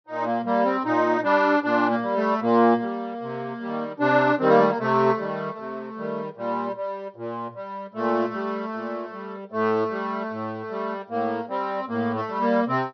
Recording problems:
low-pass filter; nothing above 6 kHz

